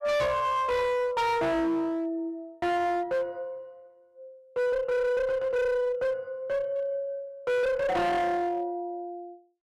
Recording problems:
distorted audio; hard clipping, uneven, signal-to-distortion ratio 7 dB

